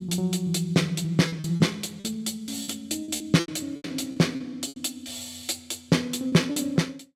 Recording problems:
lost packets; 10% of the sound replaced, filled with repeated pitch periods

